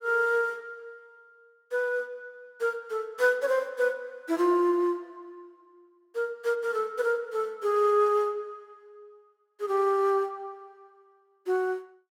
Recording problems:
none

